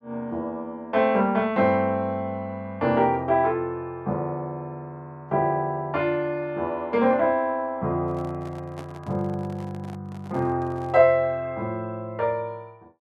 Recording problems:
handling noise; from 8 to 11 s; peak -11 dB vs average level

